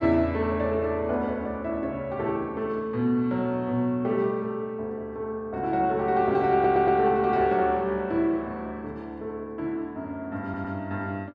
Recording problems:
stutter; at 6.5 s and at 10 s

